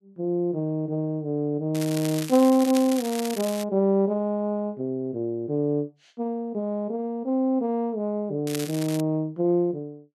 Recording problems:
crackle; from 2 to 3.5 s and at 8.5 s; loose cable, SNR 11 dB

